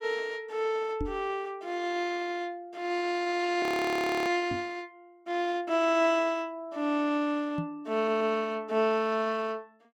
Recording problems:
knock on the microphone; at 1 s, at 4.5 s and at 7.5 s; peak -1 dB vs average level
frozen audio; at 3.5 s for 0.5 s
audio stuttering; at 8 s

